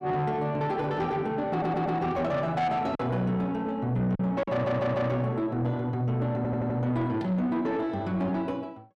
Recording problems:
distorted audio; soft clipping, signal-to-distortion ratio 11 dB
packet loss; 1.6% of the sound replaced, filled with silence
audio stuttering; at 1.5 s, at 4.5 s and at 6.5 s

